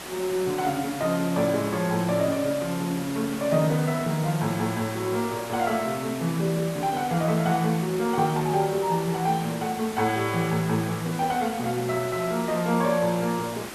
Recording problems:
hiss; slope -3 dB per octave, SNR 11 dB

